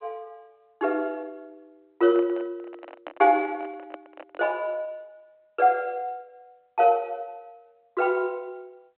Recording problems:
phone line; 260 Hz to 3.4 kHz, G.726
microphone handling noise; from 2 to 4.5 s; peak -8 dB vs average level

